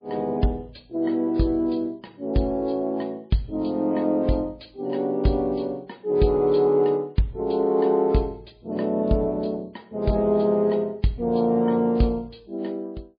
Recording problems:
lossy codec; MP3, log-spectral distance 2 dB, nothing above 4.5 kHz

